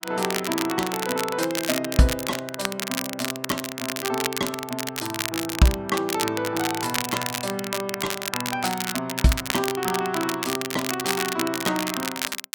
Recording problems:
crackle; vinyl, SNR 2 dB

